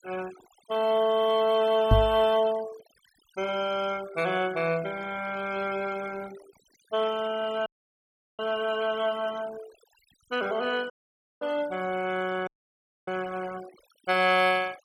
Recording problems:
noise reduction artefacts; signal-to-artefact ratio 18 dB
knock on the microphone; at 2 s; peak +9 dB vs average level
audio cutting out; at 7.5 s for 0.5 s, at 11 s for 0.5 s and at 12 s for 0.5 s

